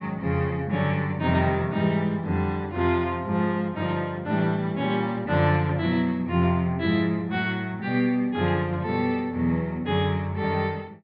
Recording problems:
low-pass filter; nothing above 5.5 kHz

